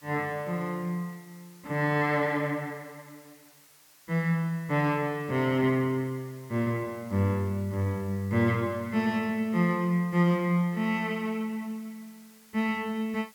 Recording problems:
hiss; slope +1 dB per octave, SNR 26 dB

